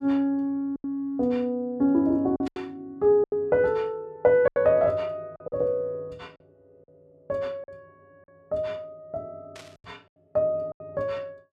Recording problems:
lost packets; 6% of the sound replaced, filled with silence
static burst; at 2.5 s and at 9.5 s; peak -14 dB vs average level

